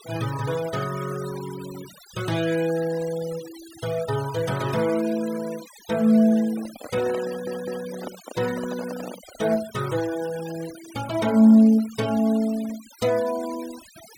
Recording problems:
noise reduction artefacts; signal-to-artefact ratio 18 dB
handling noise; from 6.5 to 9.5 s; peak -8 dB vs average level
audio stuttering; at 7.5 s

